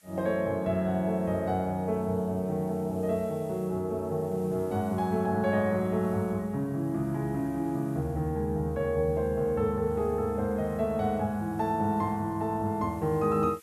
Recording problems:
hiss; slope +2 dB per octave, SNR 28 dB

